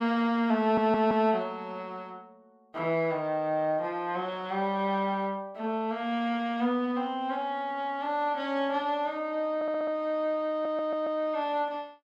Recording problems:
stutter; at 0.5 s, at 9.5 s and at 11 s

